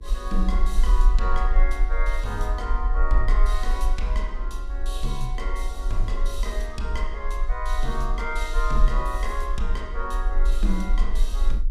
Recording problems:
hum; 50 Hz, harmonics up to 500 Hz, SNR 22 dB
low-frequency rumble; below 40 Hz, strongest tone 22 Hz, SNR -5 dB

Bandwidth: 15 kHz